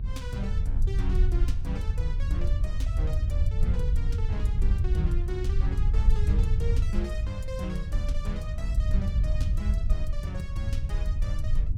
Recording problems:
mains hum; 50 Hz, harmonics up to 350 Hz, SNR 6 dB
wind on the microphone; below 76 Hz, SNR -10 dB

